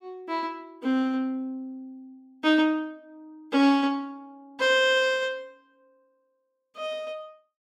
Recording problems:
none

